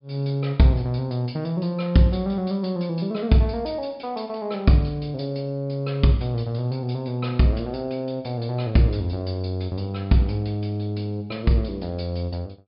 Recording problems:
treble missing; nothing above 5.5 kHz

